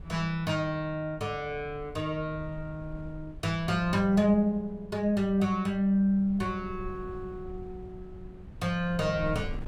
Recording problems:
wind on the microphone; below 110 Hz, SNR 17 dB

